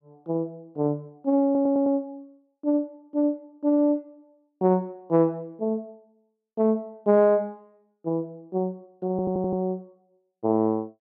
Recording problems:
stutter; at 1.5 s and at 9 s

